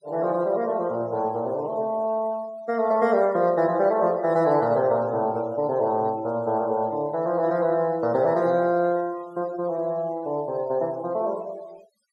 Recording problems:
noise reduction artefacts; signal-to-artefact ratio 26 dB

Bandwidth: 12.5 kHz